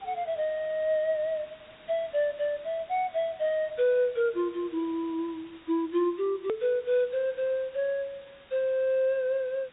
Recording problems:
treble cut off; nothing above 4 kHz
hiss; SNR 24 dB
click at an edit; at 6.5 s

